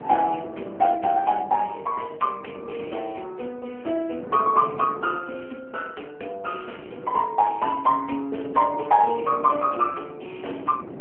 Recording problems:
telephone audio; 300 Hz to 3.1 kHz, AMR-NB
wind on the microphone; below 530 Hz, SNR 17 dB

